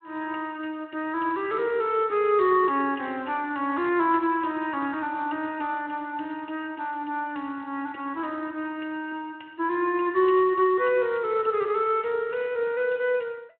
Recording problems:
phone line; 280 Hz to 3.3 kHz, Speex

